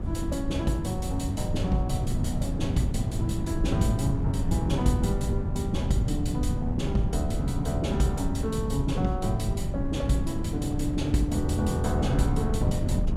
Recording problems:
rumble; below 170 Hz, SNR 6 dB
wind on the microphone; below 170 Hz, SNR 2 dB

